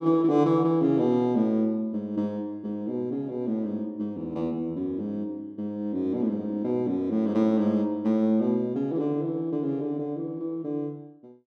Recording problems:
none

